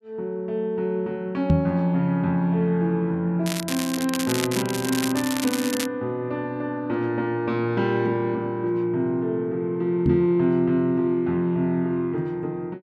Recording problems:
knock on the microphone; at 1.5 s and at 10 s; peak +7 dB vs average level
crackle; from 3.5 to 6 s; loose cable, SNR 6 dB

